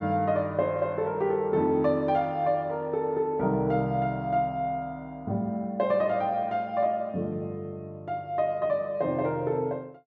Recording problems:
none

